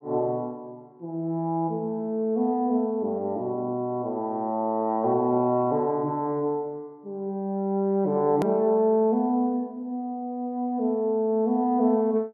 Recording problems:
edit click; at 8.5 s

